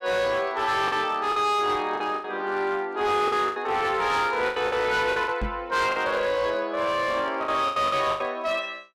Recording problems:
distorted audio; hard clipping, signal-to-distortion ratio 12 dB
lost packets; 9% of the sound replaced, filled with the last packet
microphone thump; at 5.5 s; peak -2 dB vs average level

